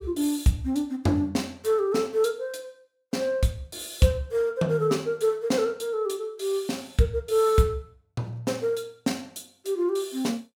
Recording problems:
none

